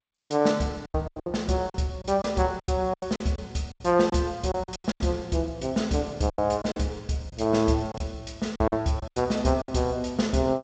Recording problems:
lossy codec; G.722, log-spectral distance 3 dB, nothing above 7.3 kHz
lost packets; 12% of the sound replaced, filled with silence

